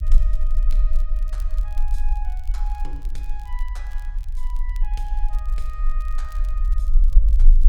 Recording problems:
rumble; below 42 Hz, strongest tone 20 Hz, SNR -18 dB
crackling; vinyl, SNR 13 dB

